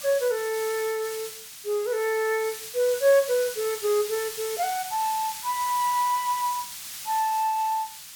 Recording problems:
background hiss; slope +4 dB per octave, SNR 9 dB

